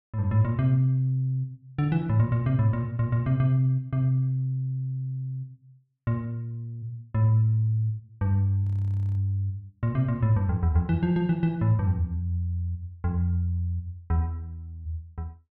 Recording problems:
audio freezing; at 8.5 s for 0.5 s

